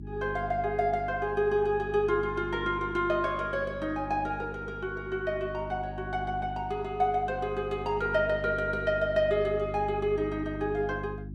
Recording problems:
hum; 50 Hz, harmonics up to 350 Hz, SNR 11 dB

